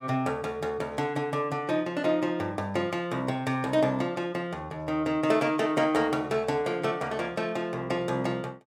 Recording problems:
none

